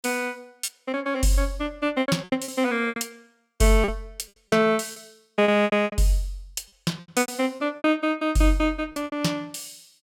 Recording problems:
lost packets; 13% of the sound replaced, filled with repeated pitch periods

